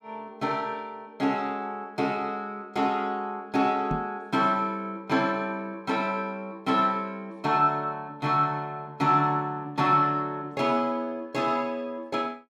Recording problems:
microphone thump; at 4 s; peak 0 dB vs average level

